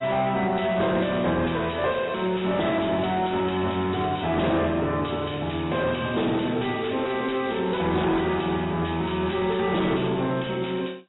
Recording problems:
lossy compression; AAC, log-spectral distance 9 dB, nothing above 3.8 kHz
distorted audio; soft clipping, signal-to-distortion ratio 10 dB

